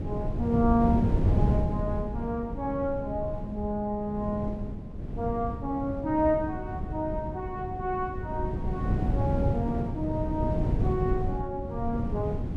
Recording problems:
hum; 50 Hz, harmonics up to 450 Hz, SNR 18 dB
wind on the microphone; below 190 Hz, SNR 1 dB

